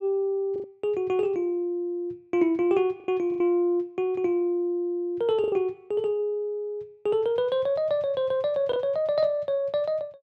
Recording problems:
lost packets; 3% of the sound replaced, filled with the last packet

